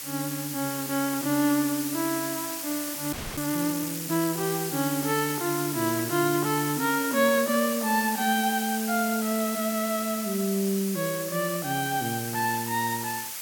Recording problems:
background hiss; slope +2 dB per octave, SNR 5 dB
audio freezing; at 3 s

